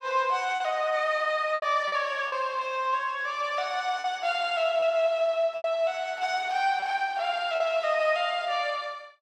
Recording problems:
packet loss; 4% of the sound replaced, filled with repeated pitch periods

